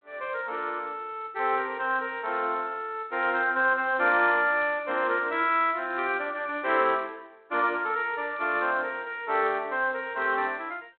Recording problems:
telephone audio; 280 Hz to 3.9 kHz, G.726

